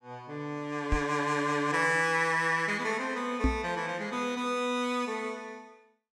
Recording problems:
microphone thump; at 1 s and at 3.5 s; peak +5 dB vs average level

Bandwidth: 16 kHz